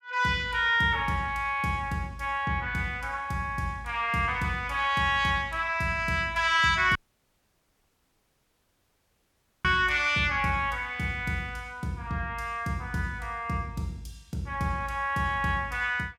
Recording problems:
audio cutting out; at 7 s for 2.5 s

